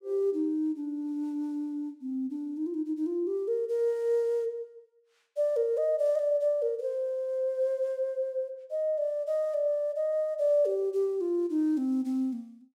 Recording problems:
none

